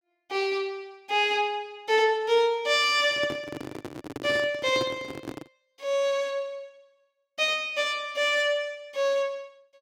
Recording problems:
microphone handling noise; from 3 to 5.5 s; peak -3 dB vs average level

